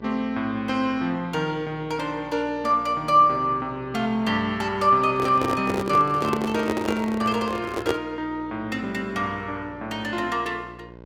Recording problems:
hum; 60 Hz, harmonics up to 1.6 kHz, SNR 21 dB
microphone handling noise; from 5 to 8 s; peak +4 dB vs average level

